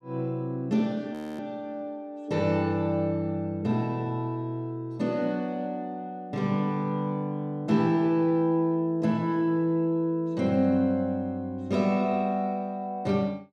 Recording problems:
frozen audio; at 1 s

